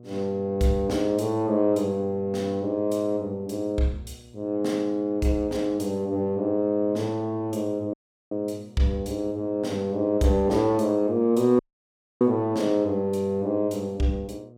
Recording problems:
hum; 60 Hz, harmonics up to 720 Hz, SNR 25 dB
dropout; at 8 s and at 12 s for 0.5 s

